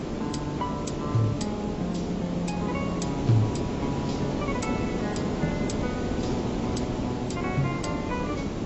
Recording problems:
lossy codec; AAC, log-spectral distance 6 dB, nothing above 8 kHz
background hiss; SNR -1 dB

